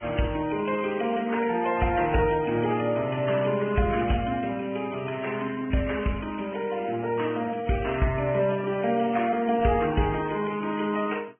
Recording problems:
treble cut off; nothing above 3.1 kHz
lossy compression; AAC, then Vorbis, log-spectral distance 5 dB

